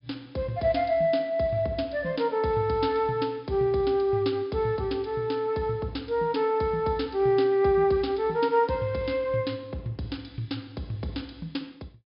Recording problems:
treble cut off; nothing above 5.5 kHz

